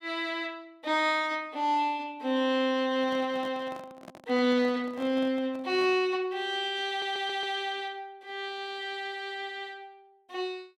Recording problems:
microphone handling noise; from 3 to 6 s; peak -11 dB vs average level
audio stuttering; at 7 s

